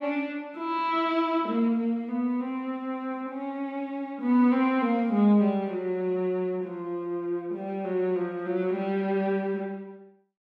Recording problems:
none

